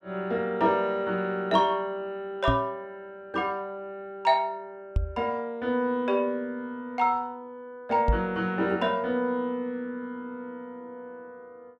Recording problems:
knock on the microphone; at 2.5 s, at 5 s and at 8 s; peak +6 dB vs average level

